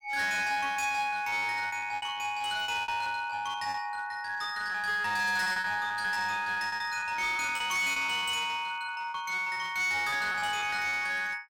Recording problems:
distortion; hard clipping, uneven, signal-to-distortion ratio 10 dB
packet loss; 14% of the sound replaced, filled with repeated pitch periods

